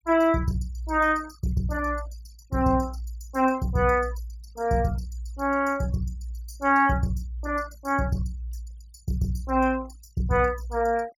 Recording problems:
noise reduction artefacts; signal-to-artefact ratio 22 dB

